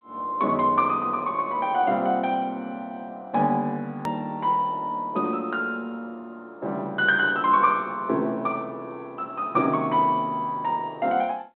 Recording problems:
phone line; 190 Hz to 3.7 kHz, G.726
edit click; at 4 s

